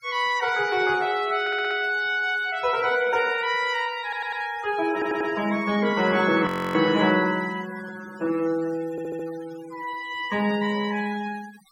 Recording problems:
denoising artefacts; signal-to-artefact ratio 18 dB
stutter; 4 times, first at 1.5 s
frozen audio; at 6.5 s

